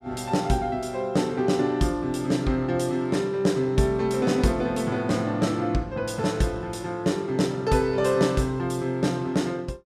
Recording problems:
none

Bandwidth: 14.5 kHz